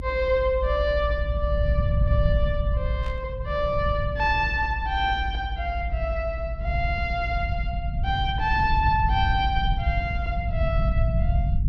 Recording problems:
rumble; below 94 Hz, SNR 1 dB
burst of static; at 3 s; peak -13 dB vs average level

